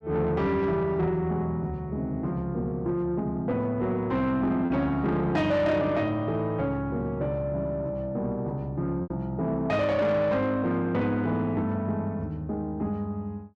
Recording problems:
distorted audio; soft clipping, signal-to-distortion ratio 12 dB
packet loss; 0.9% of the sound replaced, filled with repeated pitch periods

